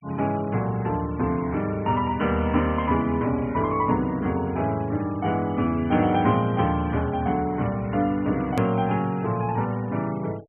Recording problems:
treble missing; nothing above 3.1 kHz
noise reduction artefacts; signal-to-artefact ratio 24 dB
edit click; at 8.5 s

